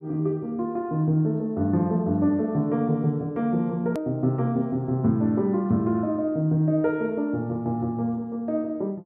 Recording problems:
edit click; at 4 s

